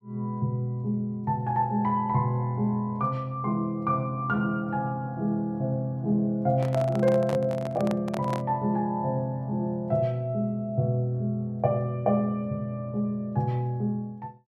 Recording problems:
microphone handling noise; from 6.5 to 8.5 s; peak -3 dB vs average level

